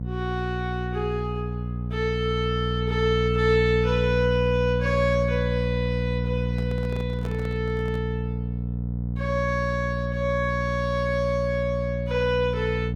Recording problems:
hum; 60 Hz, harmonics up to 540 Hz, SNR 2 dB
handling noise; from 6.5 to 8 s; peak -7 dB vs average level

